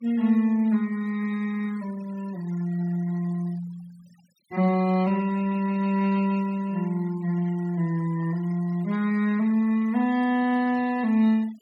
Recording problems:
denoising artefacts; signal-to-artefact ratio 23 dB

